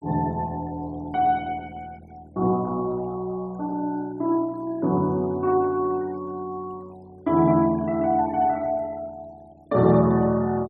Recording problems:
denoising artefacts; signal-to-artefact ratio 28 dB

